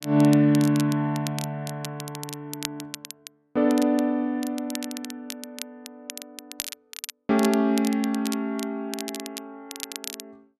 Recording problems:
crackle; vinyl, SNR 13 dB

